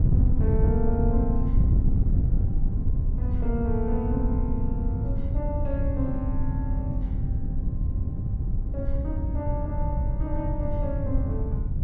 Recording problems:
wind on the microphone; below 110 Hz, SNR -6 dB

